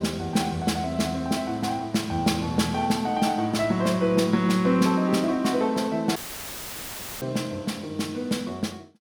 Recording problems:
dropout; at 6 s for 1 s; filled with static

